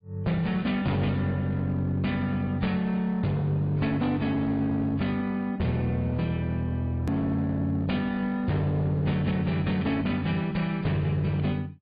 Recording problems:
treble cut off; nothing above 4.8 kHz
lossy codec; AAC, log-spectral distance 2 dB
distorted audio; hard clipping, uneven, signal-to-distortion ratio 10 dB
edit click; at 7 s

